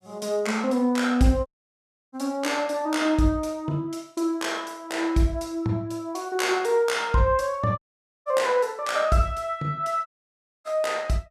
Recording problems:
audio cutting out; at 1.5 s for 0.5 s, at 8 s and at 10 s for 0.5 s

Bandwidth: 14.5 kHz